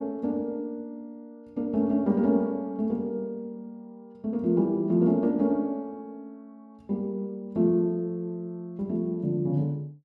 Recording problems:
none

